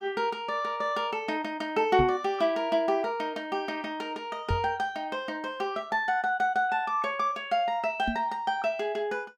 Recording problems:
microphone thump; at 2 s, at 4.5 s and at 8 s; peak +2 dB vs average level

